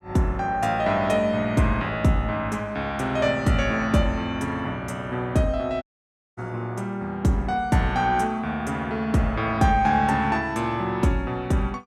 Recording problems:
audio cutting out; at 6 s for 0.5 s

